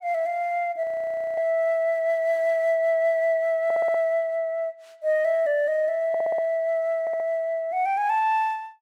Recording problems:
frozen audio; at 1 s for 0.5 s
stutter; at 3.5 s, at 6 s and at 7 s

